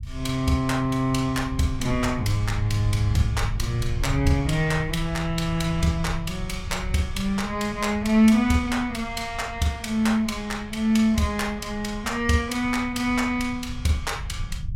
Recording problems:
rumble; below 110 Hz, SNR 10 dB

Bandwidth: 16.5 kHz